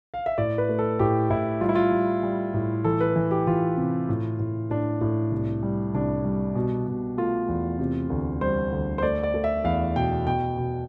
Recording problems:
none

